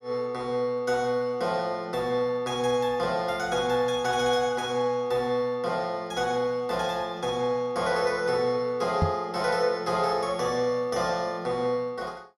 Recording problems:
microphone bump; at 9 s; peak +5 dB vs average level

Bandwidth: 15 kHz